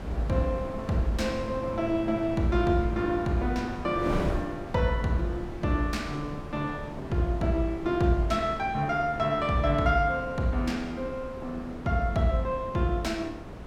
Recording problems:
wind on the microphone; below 500 Hz, SNR 10 dB

